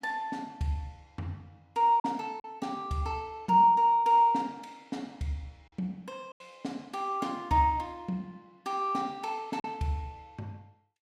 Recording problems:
packet loss; 2% of the sound replaced, filled with silence

